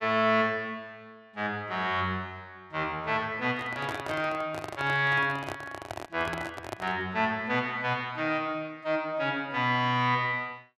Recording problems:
microphone handling noise; from 3.5 to 7 s; peak -3 dB vs average level

